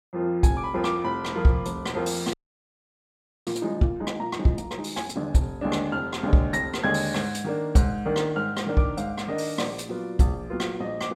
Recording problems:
audio freezing; at 2.5 s for 1 s

